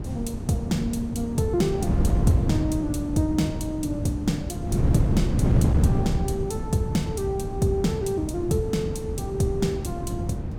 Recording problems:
wind noise; below 200 Hz, SNR 0 dB

